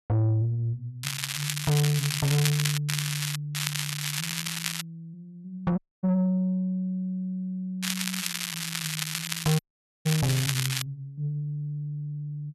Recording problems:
distorted audio; soft clipping, signal-to-distortion ratio 7 dB
crackle; 4 times, first at 1 s; loose cable, SNR 1 dB
dropout; at 6 s and at 9.5 s

